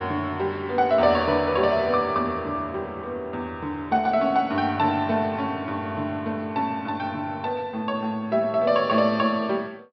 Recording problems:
treble missing; nothing above 5.5 kHz

